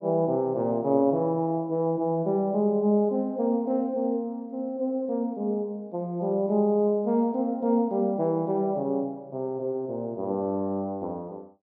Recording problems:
low-pass filter; nothing above 6.5 kHz

